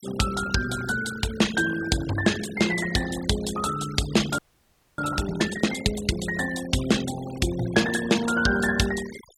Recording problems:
noise reduction artefacts; signal-to-artefact ratio 14 dB
audio freezing; at 4.5 s for 0.5 s

